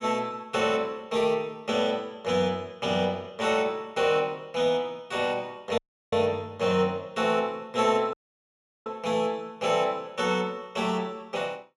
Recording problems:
audio cutting out; at 6 s and at 8 s for 0.5 s

